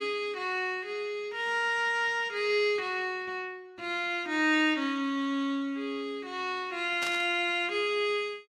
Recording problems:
burst of static; at 7 s; peak -3 dB vs average level

